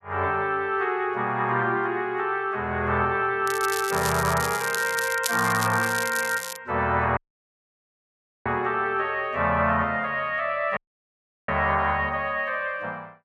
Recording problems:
crackle; from 3.5 to 6.5 s; loose cable, SNR 8 dB
dropout; at 7 s for 1.5 s and at 11 s for 0.5 s

